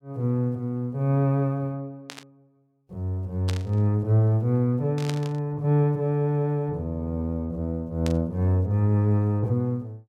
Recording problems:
burst of static; 4 times, first at 2 s; peak -5 dB vs average level

